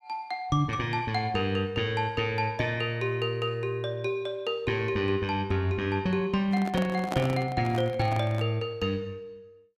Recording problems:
microphone handling noise; from 6.5 to 8.5 s; peak 0 dB vs average level

